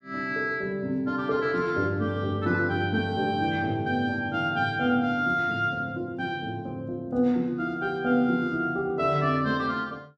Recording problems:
none

